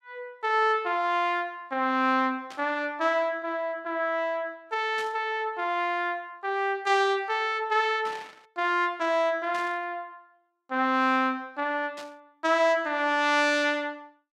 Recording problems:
static burst; 5 times, first at 2.5 s; peak -11 dB vs average level

